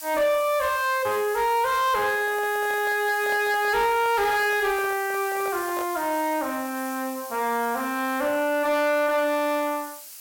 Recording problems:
distortion; soft clipping, signal-to-distortion ratio 12 dB
background hiss; slope +3 dB per octave, SNR 14 dB
handling noise; from 2 to 6 s; peak -7 dB vs average level

